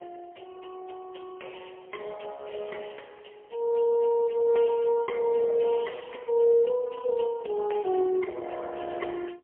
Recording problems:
telephone audio; 280 Hz to 3.2 kHz, AMR-NB, then MP3

